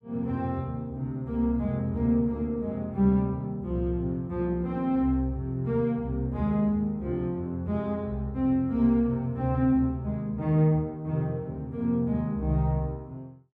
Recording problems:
none

